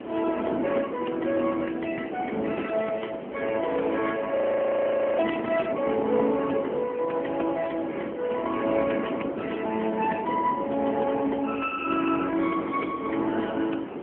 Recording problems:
telephone audio; 220 Hz to 3.2 kHz, AMR-NB
hiss; SNR 21 dB
wind on the microphone; below 530 Hz, SNR 8 dB
frozen audio; at 4.5 s for 1 s

